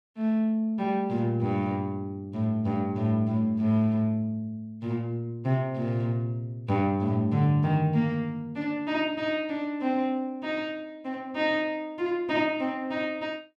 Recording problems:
none

